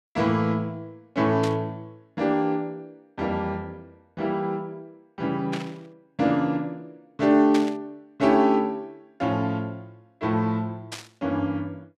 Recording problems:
burst of static; 4 times, first at 1.5 s; peak -3 dB vs average level

